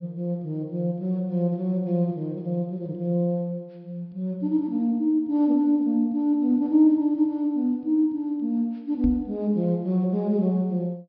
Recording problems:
low-pass filter; nothing above 5.5 kHz
microphone bump; at 9 s; peak -1 dB vs average level

